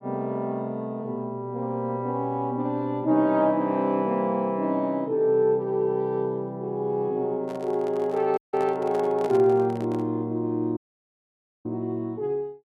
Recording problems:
handling noise; from 7.5 to 10 s; peak -7 dB vs average level
audio cutting out; at 8.5 s and at 11 s for 1 s

